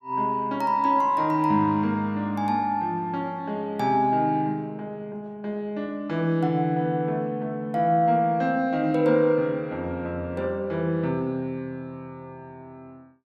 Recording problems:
none

